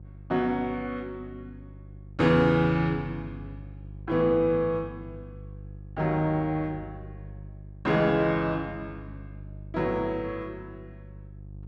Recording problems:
mains hum; 50 Hz, harmonics up to 500 Hz, SNR 17 dB

